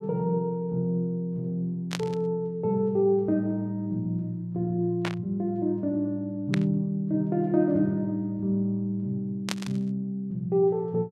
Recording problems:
burst of static; 4 times, first at 2 s; peak +2 dB vs average level

